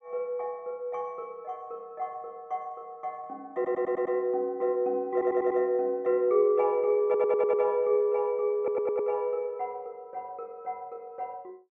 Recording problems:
stutter; 4 times, first at 3.5 s

